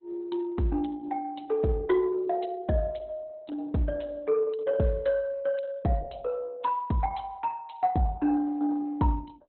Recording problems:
lossy compression; Opus, log-spectral distance 3 dB, nothing above 4.1 kHz

